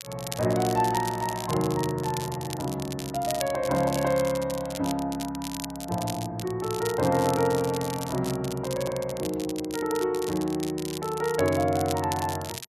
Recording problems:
crackle; vinyl, SNR 11 dB

